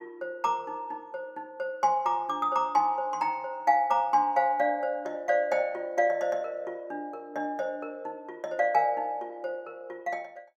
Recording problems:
none

